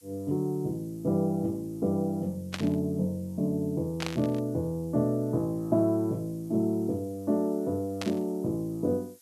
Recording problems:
background hiss; slope +4 dB per octave, SNR 27 dB
burst of static; at 2.5 s, at 4 s and at 8 s; peak -1 dB vs average level

